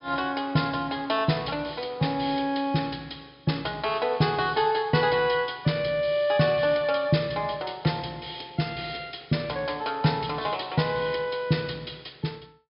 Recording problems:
low-pass filter; nothing above 5.5 kHz

